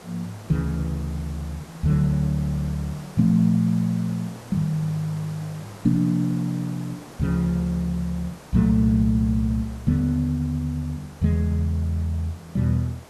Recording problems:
background hiss; slope -5 dB per octave, SNR 20 dB

